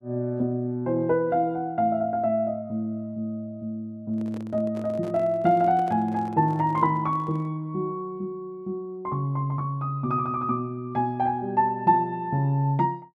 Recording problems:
handling noise; from 4 to 7.5 s; peak -12 dB vs average level

